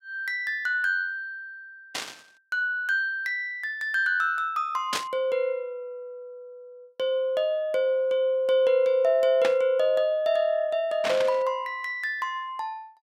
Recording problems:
burst of static; 4 times, first at 2 s; peak +1 dB vs average level

